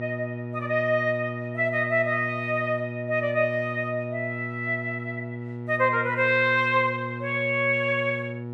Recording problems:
hum; 60 Hz, harmonics up to 960 Hz, SNR 9 dB

